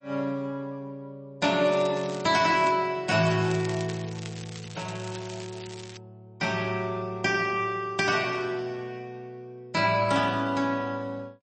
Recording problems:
lossy codec; MP3, log-spectral distance 4 dB, nothing above 8.2 kHz
crackling; from 1.5 to 2.5 s and from 3 to 6 s; loose cable, SNR 16 dB

